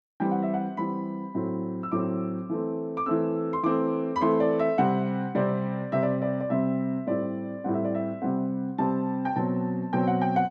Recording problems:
none

